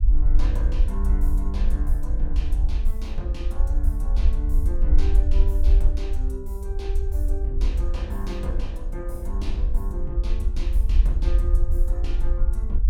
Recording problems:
low-frequency rumble; below 54 Hz, SNR -11 dB

